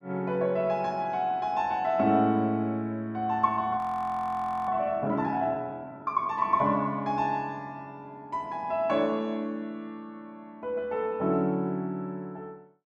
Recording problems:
frozen audio; at 4 s for 1 s

